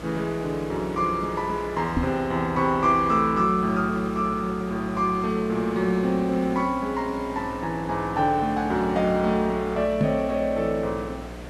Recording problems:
hum; 60 Hz, harmonics up to 720 Hz, SNR 17 dB
hiss; SNR 18 dB
microphone bump; at 2 s and at 10 s; peak +5 dB vs average level

